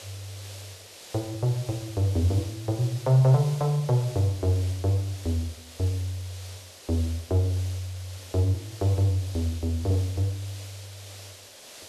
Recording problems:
background hiss; SNR 17 dB

